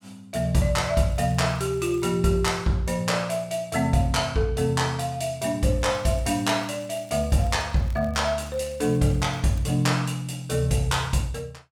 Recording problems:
crackling; at 1 s and from 6 to 10 s; loose cable, SNR 29 dB

